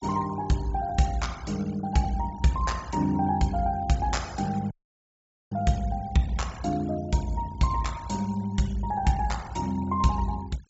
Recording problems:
low-pass filter; nothing above 8 kHz
noise reduction artefacts; signal-to-artefact ratio 21 dB
audio cutting out; at 4.5 s for 1 s

